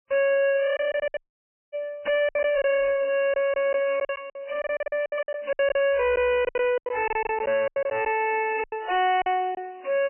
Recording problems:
codec artefacts; MP3, log-spectral distance 4 dB, nothing above 2.4 kHz
distortion; soft clipping, signal-to-distortion ratio 6 dB
packet loss; 15% of the sound replaced, filled with silence
dropout; at 1 s for 0.5 s

